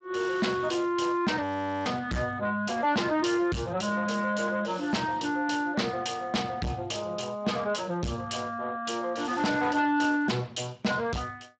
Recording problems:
codec artefacts; Speex, log-spectral distance 6 dB, nothing above 7.3 kHz
distortion; soft clipping, signal-to-distortion ratio 8 dB
frozen audio; at 1.5 s

